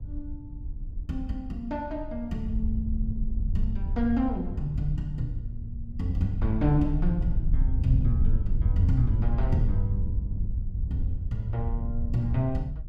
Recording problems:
wind on the microphone; below 74 Hz, SNR 0 dB

